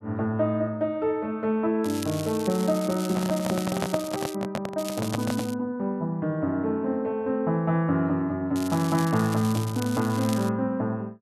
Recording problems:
crackling; from 2 to 4.5 s, at 5 s and from 8.5 to 10 s; loose cable, SNR 13 dB
handling noise; from 3 to 5.5 s; peak +2 dB vs average level

